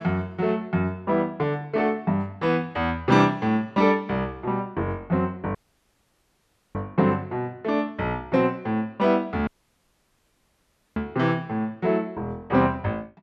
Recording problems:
dropout; at 5.5 s for 1 s and at 9.5 s for 1.5 s

